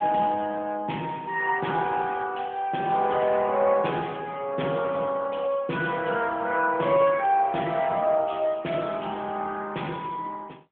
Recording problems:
telephone audio; 240 Hz to 3.3 kHz, AMR-NB

